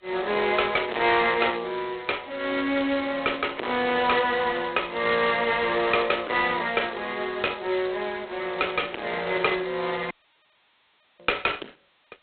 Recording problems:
phone line; 300 Hz to 3.9 kHz, G.726
distorted audio; soft clipping, signal-to-distortion ratio 10 dB
dropout; at 10 s for 1 s

